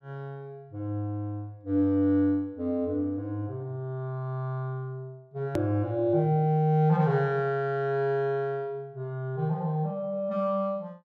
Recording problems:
hard cut with a click; at 5.5 s

